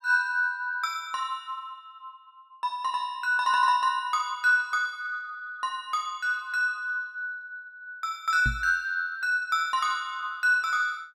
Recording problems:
microphone bump; at 8.5 s; peak 0 dB vs average level

